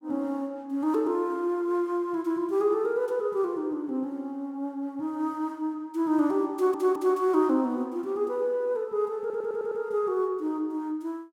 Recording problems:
audio stuttering; at 6.5 s and at 9 s

